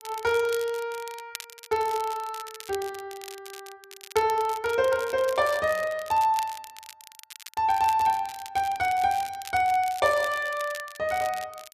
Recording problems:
crackling; vinyl, SNR 16 dB

